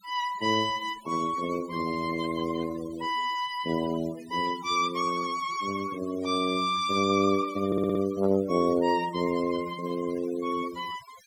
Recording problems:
noise reduction artefacts; signal-to-artefact ratio 18 dB
audio stuttering; at 7.5 s

